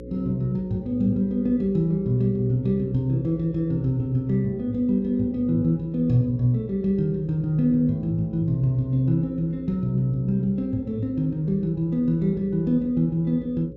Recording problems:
electrical hum; 60 Hz, harmonics up to 540 Hz, SNR 17 dB

